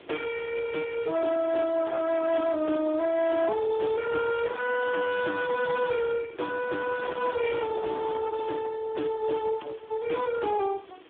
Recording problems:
phone line; 260 Hz to 3.4 kHz, Speex
distortion; hard clipping, uneven, signal-to-distortion ratio 10 dB
hiss; SNR 27 dB
wind on the microphone; below 880 Hz, SNR 17 dB

